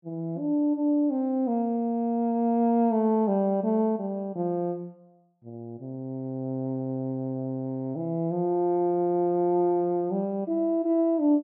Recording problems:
none

